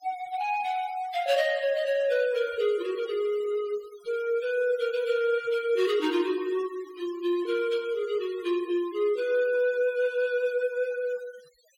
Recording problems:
denoising artefacts; signal-to-artefact ratio 20 dB

